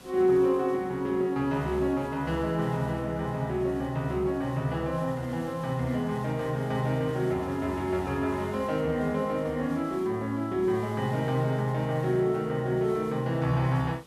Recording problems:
hiss; SNR 23 dB

